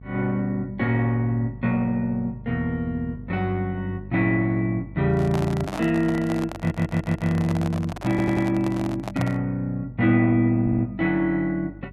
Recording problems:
hum; 50 Hz, harmonics up to 450 Hz, SNR 18 dB
handling noise; from 5 to 9.5 s; peak -3 dB vs average level
stutter; at 6.5 s, at 8 s and at 11 s

